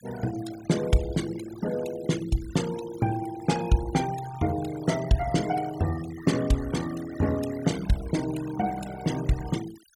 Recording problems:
noise reduction artefacts; signal-to-artefact ratio 14 dB

